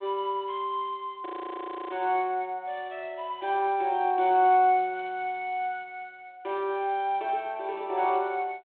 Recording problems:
phone line; 300 Hz to 3.7 kHz, G.726
audio freezing; at 1.5 s for 0.5 s

